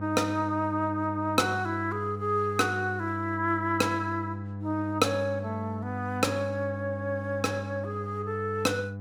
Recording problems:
electrical hum; 50 Hz, harmonics up to 800 Hz, SNR 8 dB

